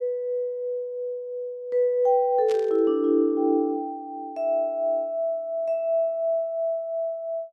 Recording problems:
burst of static; at 2.5 s; peak -11 dB vs average level

